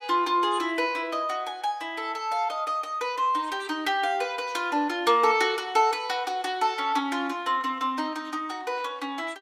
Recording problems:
none

